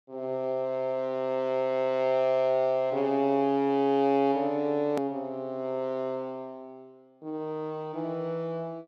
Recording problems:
edit click; at 5 s

